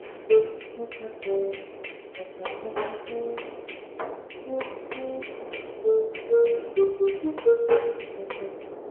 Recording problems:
phone line; 320 Hz to 3.3 kHz, AMR-NB
wind on the microphone; below 620 Hz, SNR 14 dB

